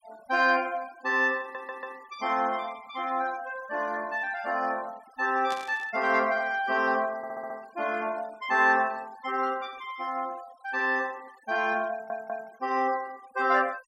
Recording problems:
denoising artefacts; signal-to-artefact ratio 24 dB
audio stuttering; at 1.5 s, at 7 s and at 12 s
burst of static; at 5.5 s; peak -9 dB vs average level

